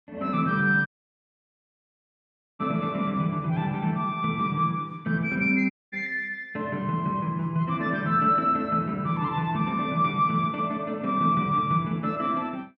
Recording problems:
audio cutting out; at 1 s for 1.5 s and at 5.5 s

